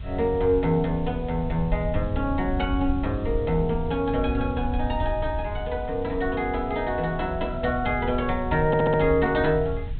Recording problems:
treble missing; nothing above 4 kHz
background hiss; SNR 27 dB
wind noise; below 84 Hz, SNR 8 dB
audio stuttering; at 8.5 s

